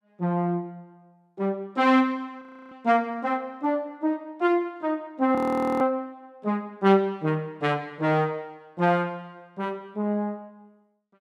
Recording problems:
audio freezing; at 2.5 s and at 5.5 s

